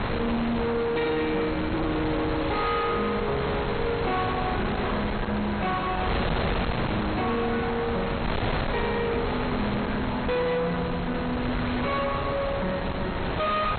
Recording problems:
lossy codec; MP2, log-spectral distance 15 dB, nothing above 4.2 kHz
distorted audio; soft clipping, signal-to-distortion ratio 5 dB
hiss; SNR 27 dB
wind on the microphone; below 1.3 kHz, SNR 2 dB

